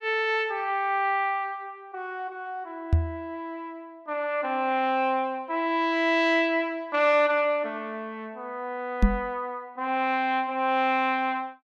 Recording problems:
knock on the microphone; at 3 s and at 9 s; peak +8 dB vs average level

